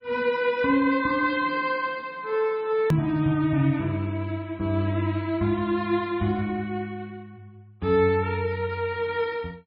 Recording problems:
codec artefacts; MP3, log-spectral distance 2 dB, nothing above 19.5 kHz
edit click; at 3 s

